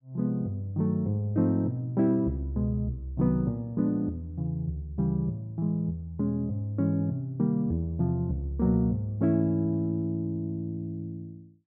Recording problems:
none

